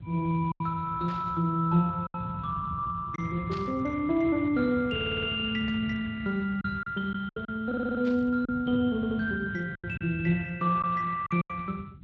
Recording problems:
lossy compression; Speex, log-spectral distance 3 dB
rumble; below 170 Hz, SNR 13 dB
lost packets; 5% of the sound replaced, filled with silence
static burst; 4 times, first at 1 s; peak -12 dB vs average level
stutter; at 5 s, at 7.5 s and at 9 s

